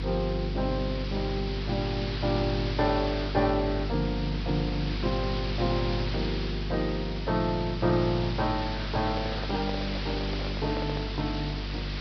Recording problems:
treble missing; nothing above 5.5 kHz
hum; 50 Hz, harmonics up to 500 Hz, SNR 4 dB
background hiss; SNR 7 dB
microphone handling noise; from 9 to 11 s; peak -3 dB vs average level

